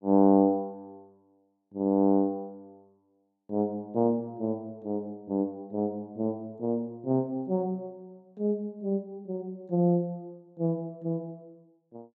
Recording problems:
none

